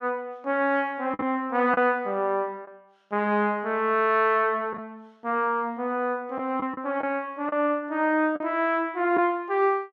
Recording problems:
packet loss; 3% of the sound replaced, filled with the last packet

